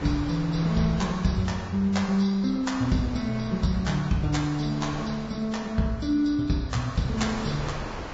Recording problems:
lossy compression; Vorbis, log-spectral distance 3 dB, nothing above 7.3 kHz
wind noise; below 1.3 kHz, SNR 13 dB

